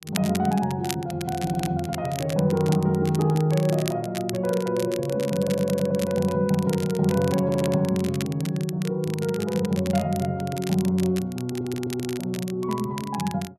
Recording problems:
crackling; vinyl, SNR 14 dB
audio stuttering; 4 times, first at 1.5 s

